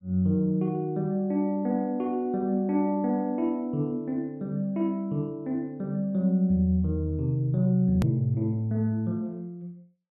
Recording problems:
treble cut off; nothing above 4 kHz
click at an edit; at 8 s

